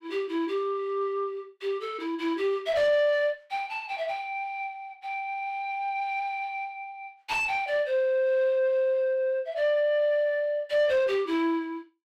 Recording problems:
distorted audio; soft clipping, signal-to-distortion ratio 11 dB

